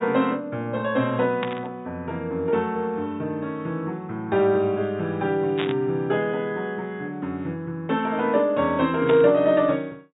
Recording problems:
low-pass filter; nothing above 4 kHz
burst of static; at 1.5 s, at 5.5 s and at 9 s; peak -2 dB vs average level

